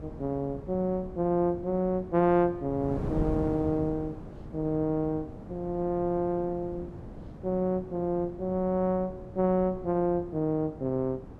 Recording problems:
wind noise; below 330 Hz, SNR 12 dB

